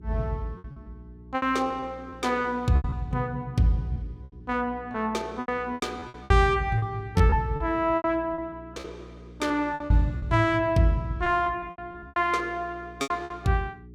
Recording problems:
hum; 60 Hz, harmonics up to 420 Hz, SNR 20 dB
lost packets; 13% of the sound replaced, filled with repeated pitch periods

